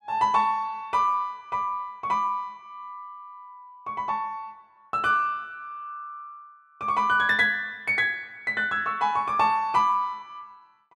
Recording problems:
none

